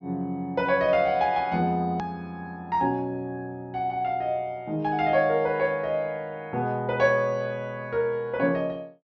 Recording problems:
treble missing; nothing above 6.7 kHz
edit click; at 2 s

